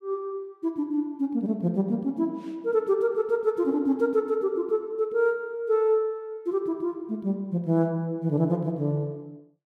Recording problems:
none

